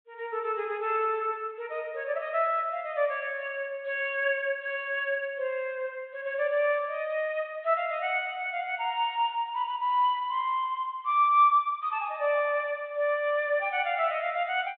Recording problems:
treble missing; nothing above 4 kHz

